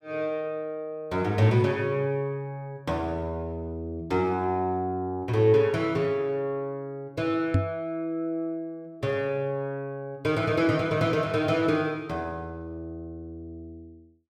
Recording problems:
microphone thump; at 7.5 s; peak +7 dB vs average level

